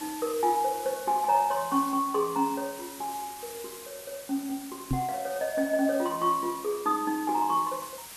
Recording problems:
hiss; slope 0 dB per octave, SNR 14 dB
microphone thump; at 5 s; peak +3 dB vs average level

